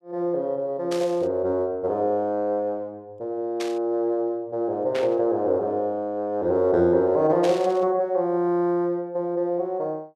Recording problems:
burst of static; 4 times, first at 1 s; peak -6 dB vs average level

